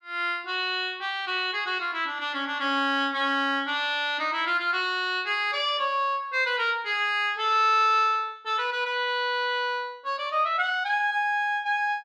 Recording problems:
none

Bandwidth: 12.5 kHz